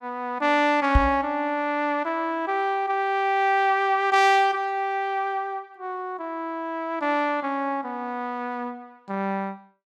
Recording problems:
microphone thump; at 1 s; peak +7 dB vs average level

